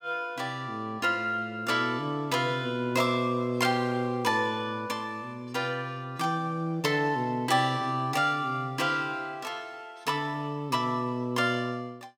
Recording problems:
none

